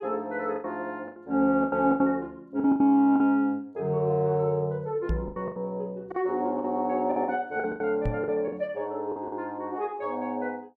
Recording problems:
lost packets; 10% of the sound replaced, filled with the last packet
knock on the microphone; at 5 s and at 8 s; peak +2 dB vs average level

